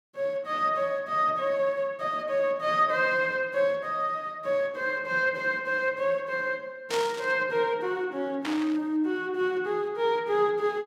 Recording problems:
burst of static; at 7 s and at 8.5 s; peak -2 dB vs average level

